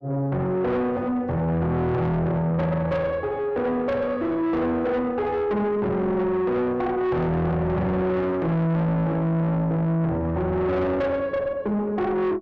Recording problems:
distorted audio; soft clipping, signal-to-distortion ratio 7 dB

